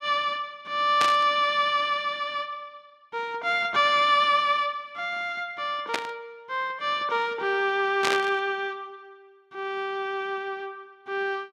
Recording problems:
static burst; at 1 s, at 6 s and at 8 s; peak +3 dB vs average level

